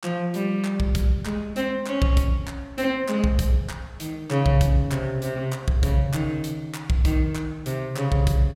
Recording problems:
none

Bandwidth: 16 kHz